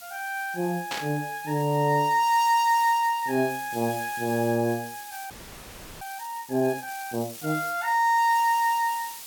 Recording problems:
background hiss; slope +2 dB per octave, SNR 16 dB
static burst; at 1 s; peak -3 dB vs average level
audio freezing; at 5.5 s for 0.5 s

